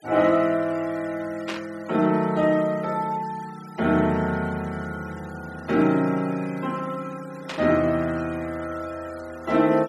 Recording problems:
denoising artefacts; signal-to-artefact ratio 22 dB
static burst; at 1.5 s and at 7.5 s; peak -3 dB vs average level

